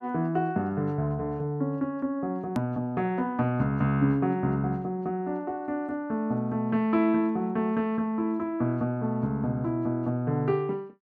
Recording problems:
edit click; at 2.5 s

